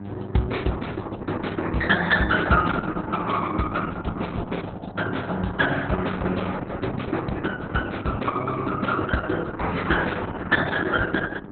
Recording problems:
lossy compression; Opus, log-spectral distance 5 dB, nothing above 4 kHz
hum; 50 Hz, harmonics up to 1.7 kHz, SNR 14 dB

